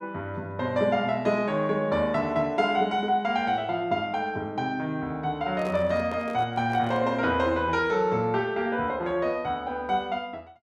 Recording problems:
microphone handling noise; from 5.5 to 7 s; peak -6 dB vs average level

